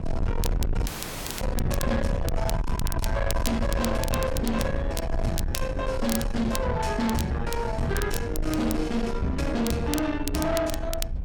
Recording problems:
distorted audio; soft clipping, signal-to-distortion ratio 7 dB
low-frequency rumble; below 150 Hz, SNR 3 dB
crackle; vinyl, SNR 11 dB
audio cutting out; at 1 s for 0.5 s

